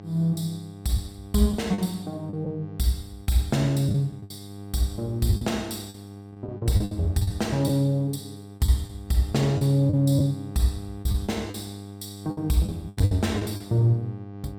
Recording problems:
electrical hum; 50 Hz, harmonics up to 1.2 kHz, SNR 14 dB
lost packets; 8% of the sound replaced, filled with the last packet

